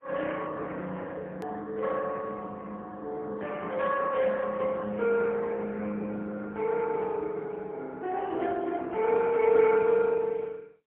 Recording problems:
telephone audio; 220 Hz to 3.4 kHz, AMR-NB, then MP3
hard cut with a click; at 1.5 s

